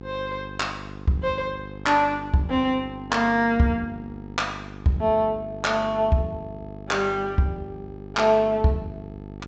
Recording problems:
treble missing; nothing above 8 kHz
hum; 50 Hz, harmonics up to 900 Hz, SNR 15 dB

